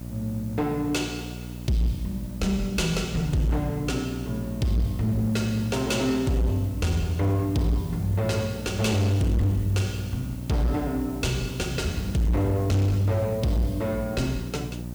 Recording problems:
distortion; hard clipping, signal-to-distortion ratio 11 dB
electrical hum; 60 Hz, harmonics up to 900 Hz, SNR 10 dB
background hiss; slope -4 dB per octave, SNR 21 dB

